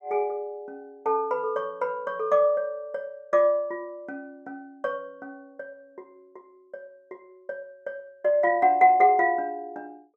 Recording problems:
none

